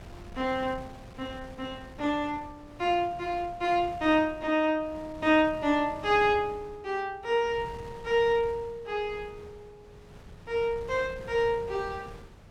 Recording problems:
wind on the microphone; below 490 Hz, SNR 19 dB

